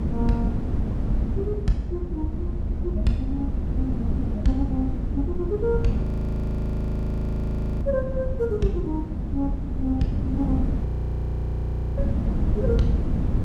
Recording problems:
low-frequency rumble; below 72 Hz, SNR 4 dB
wind on the microphone; below 220 Hz, SNR 0 dB
audio freezing; at 6 s for 2 s and at 11 s for 1 s

